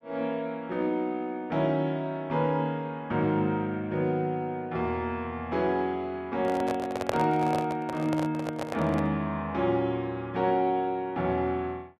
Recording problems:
handling noise; from 6.5 to 9 s; peak +4 dB vs average level

